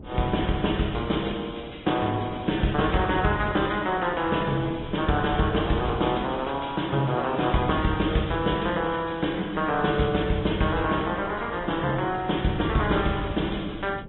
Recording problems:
low-pass filter; nothing above 3.6 kHz
codec artefacts; MP3, then Vorbis, log-spectral distance 5 dB
wind on the microphone; below 280 Hz, SNR 17 dB

